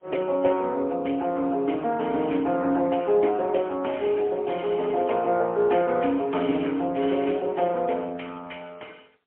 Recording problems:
phone line; 300 Hz to 3.2 kHz, AMR-NB, then MP3

